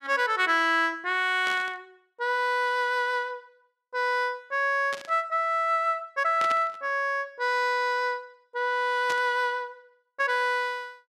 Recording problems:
burst of static; 4 times, first at 1.5 s; peak -6 dB vs average level

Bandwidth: 14.5 kHz